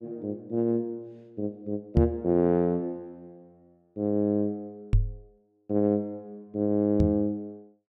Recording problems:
microphone bump; at 2 s, at 5 s and at 7 s; peak +9 dB vs average level

